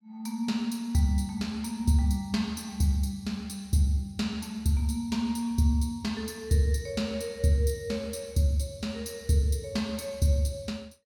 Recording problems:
none

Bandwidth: 17.5 kHz